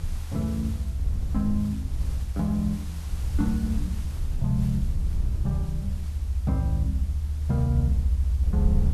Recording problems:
background hiss; SNR 19 dB
low-frequency rumble; below 76 Hz, SNR -1 dB

